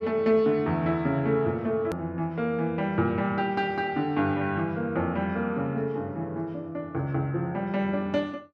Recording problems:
hard cut with a click; at 2 s

